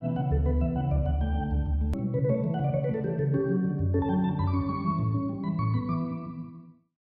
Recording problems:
hard cut with a click; at 2 s

